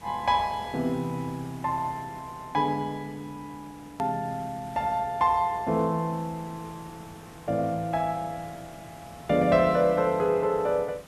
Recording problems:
background hiss; slope -4 dB per octave, SNR 21 dB
edit click; at 4 s

